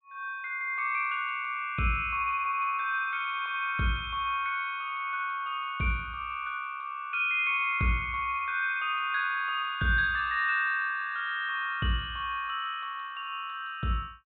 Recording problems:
low-pass filter; nothing above 4 kHz

